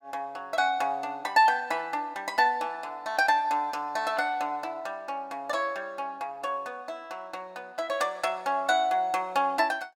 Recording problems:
none

